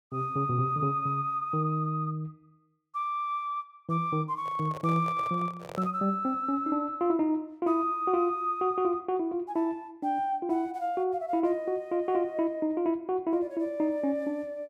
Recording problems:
handling noise; from 4.5 to 6 s; peak -6 dB vs average level

